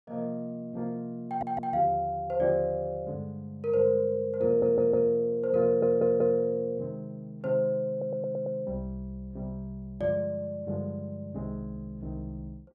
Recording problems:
audio stuttering; 4 times, first at 1.5 s

